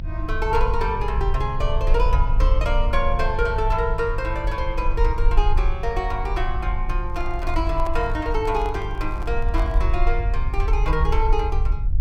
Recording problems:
hum; 50 Hz, harmonics up to 550 Hz, SNR 10 dB
rumble; below 50 Hz, SNR 0 dB
microphone handling noise; from 7 to 10 s; peak -6 dB vs average level

